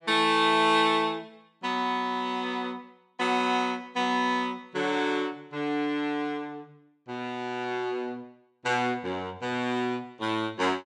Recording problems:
none

